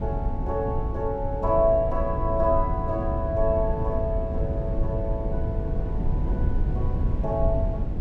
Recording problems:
low-frequency rumble; below 110 Hz, SNR 1 dB

